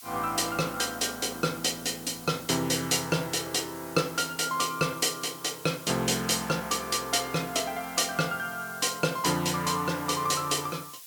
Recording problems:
background hiss; slope +3 dB per octave, SNR 15 dB

